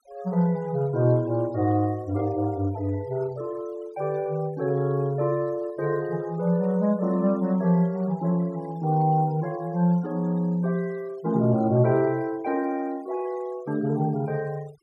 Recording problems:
denoising artefacts; signal-to-artefact ratio 24 dB

